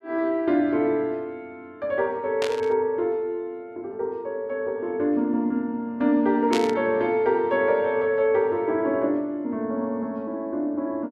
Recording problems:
burst of static; at 2.5 s and at 6.5 s; peak -1 dB vs average level

